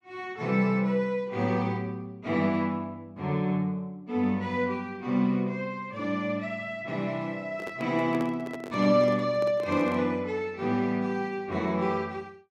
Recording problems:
microphone handling noise; from 7.5 to 10 s; peak -5 dB vs average level

